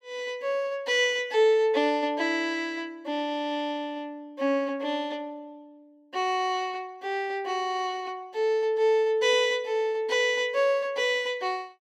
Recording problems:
none

